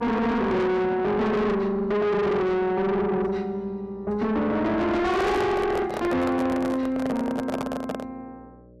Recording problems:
distortion; soft clipping, signal-to-distortion ratio 6 dB
mains hum; 60 Hz, harmonics up to 600 Hz, SNR 25 dB
handling noise; from 5 to 8 s; peak -1 dB vs average level

